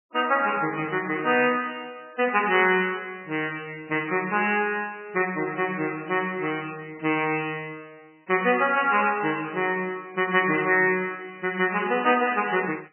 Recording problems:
lossy codec; MP3, log-spectral distance 8 dB, nothing above 2.5 kHz

